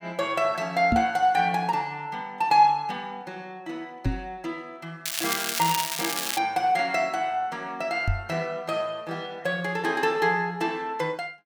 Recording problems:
knock on the microphone; at 1 s, at 4 s and at 8 s; peak +5 dB vs average level
crackle; from 5 to 6.5 s; loose cable, SNR 2 dB

